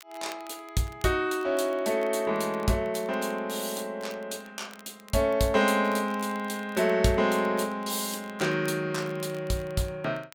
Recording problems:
crackling; vinyl, SNR 26 dB

